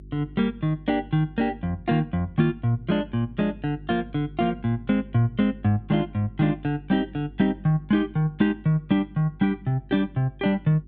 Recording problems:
hum; 50 Hz, harmonics up to 400 Hz, SNR 21 dB

